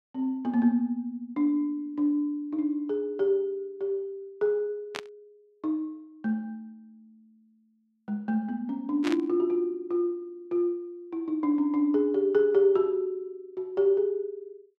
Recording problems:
burst of static; at 5 s and at 9 s; peak -2 dB vs average level

